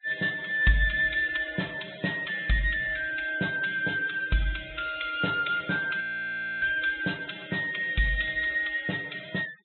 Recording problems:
low-pass filter; nothing above 3.9 kHz
noise reduction artefacts; signal-to-artefact ratio 19 dB
audio freezing; at 6 s for 0.5 s

